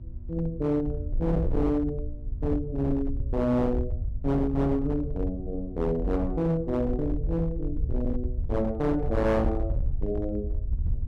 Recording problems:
distortion; hard clipping, uneven, signal-to-distortion ratio 11 dB
hum; 60 Hz, harmonics up to 600 Hz, SNR 22 dB
rumble; below 74 Hz, SNR 5 dB

